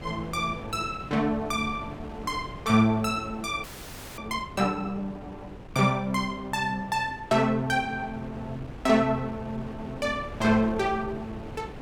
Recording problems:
wind noise; below 500 Hz, SNR 14 dB
audio freezing; at 3.5 s for 0.5 s

